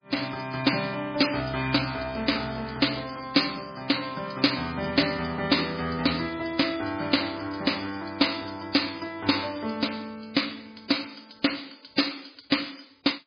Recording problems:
lossy compression; MP3, log-spectral distance 13 dB

